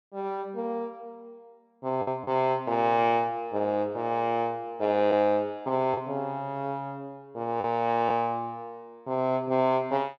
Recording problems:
lost packets; 1.7% of the sound replaced, filled with the last packet

